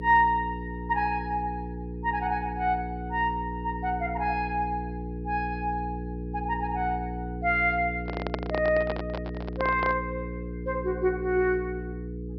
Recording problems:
low-pass filter; nothing above 5.5 kHz
hum; 60 Hz, harmonics up to 480 Hz, SNR 7 dB
microphone handling noise; from 8 to 10 s; peak +2 dB vs average level

